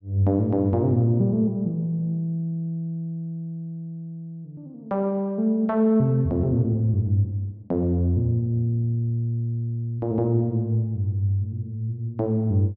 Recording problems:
none

